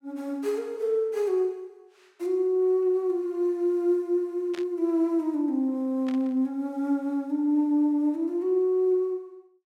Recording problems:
burst of static; at 4.5 s and at 6 s; peak -12 dB vs average level

